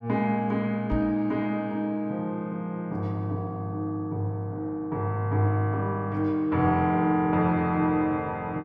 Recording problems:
knock on the microphone; at 1 s; peak -1 dB vs average level

